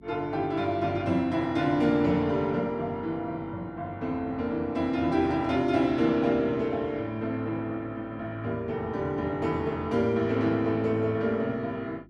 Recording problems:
hum; 50 Hz, harmonics up to 350 Hz, SNR 25 dB

